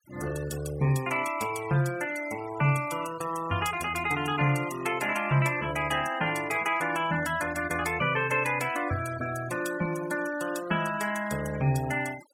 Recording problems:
noise reduction artefacts; signal-to-artefact ratio 15 dB

